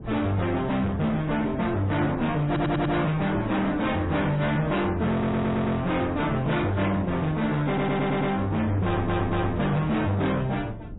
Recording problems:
lossy compression; AAC, then MP3, log-spectral distance 3 dB, nothing above 3.8 kHz
distortion; hard clipping, uneven, signal-to-distortion ratio 8 dB
wind on the microphone; below 270 Hz, SNR 14 dB
audio stuttering; 4 times, first at 2.5 s

